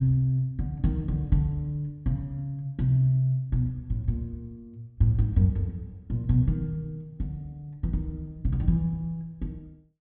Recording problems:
low-pass filter; nothing above 4 kHz

